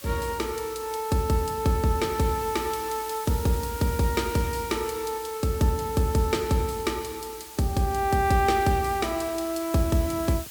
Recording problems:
hiss; slope +1 dB per octave, SNR 14 dB

